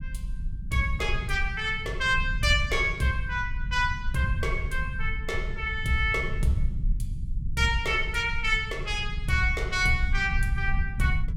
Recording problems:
low-frequency rumble; below 72 Hz, SNR 6 dB

